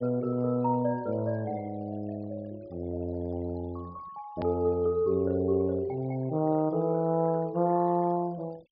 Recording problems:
treble missing; nothing above 5.5 kHz
denoising artefacts; signal-to-artefact ratio 26 dB
click at an edit; at 4.5 s

